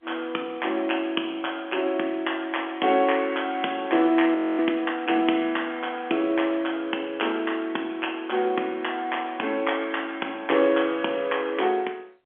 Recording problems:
phone line; 240 Hz to 3.4 kHz, G.711
frozen audio; at 4.5 s

